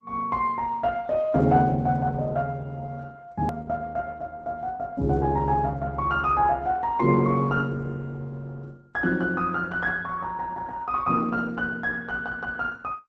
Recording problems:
codec artefacts; Opus, log-spectral distance 2 dB
edit click; at 3.5 s

